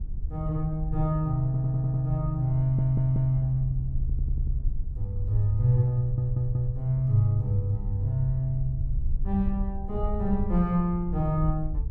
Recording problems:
wind on the microphone; below 64 Hz, SNR 7 dB
audio stuttering; 4 times, first at 1.5 s

